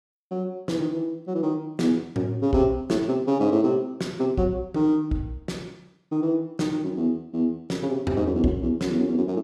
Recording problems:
none

